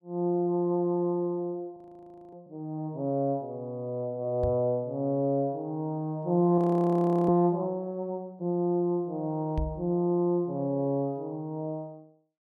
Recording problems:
frozen audio; at 2 s for 0.5 s and at 6.5 s for 0.5 s
knock on the microphone; at 4.5 s and at 9.5 s; peak 0 dB vs average level

